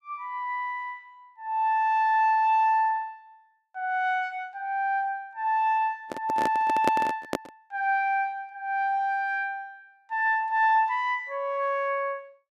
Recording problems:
handling noise; from 6 to 7.5 s; peak +3 dB vs average level

